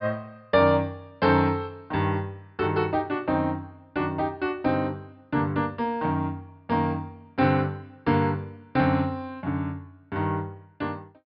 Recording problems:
treble cut off; nothing above 5.5 kHz

